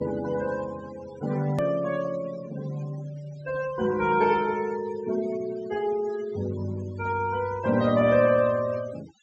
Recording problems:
low-pass filter; nothing above 8 kHz
denoising artefacts; signal-to-artefact ratio 18 dB
edit click; at 1.5 s

